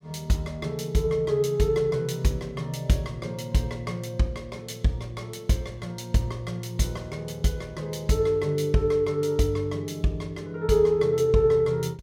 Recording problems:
none

